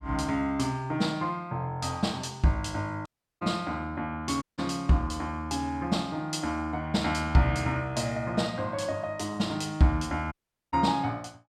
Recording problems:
dropout; at 3 s, at 4.5 s and at 10 s

